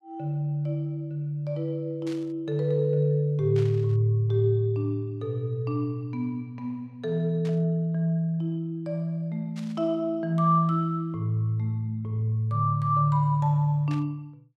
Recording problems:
burst of static; 5 times, first at 2 s; peak -13 dB vs average level

